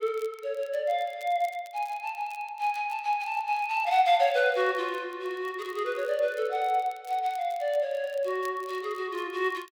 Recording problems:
crackle; vinyl, SNR 26 dB

